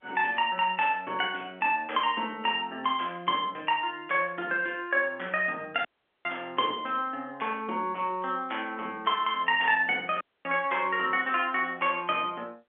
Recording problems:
telephone audio; 260 Hz to 3.5 kHz, G.711
dropout; at 6 s and at 10 s

